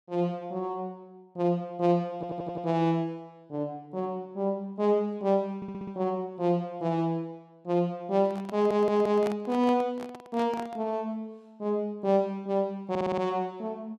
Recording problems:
audio stuttering; 4 times, first at 2 s
handling noise; from 8 to 11 s; peak -3 dB vs average level

